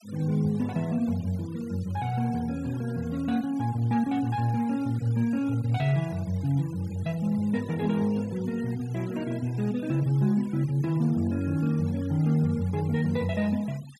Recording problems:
denoising artefacts; signal-to-artefact ratio 23 dB

